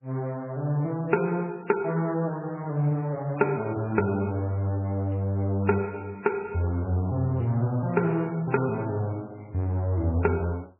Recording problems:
lossy compression; MP3, log-spectral distance 7 dB, nothing above 2.5 kHz

